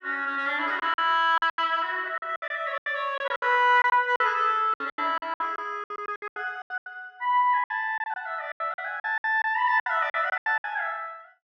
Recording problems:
lost packets; 17% of the sound replaced, filled with silence

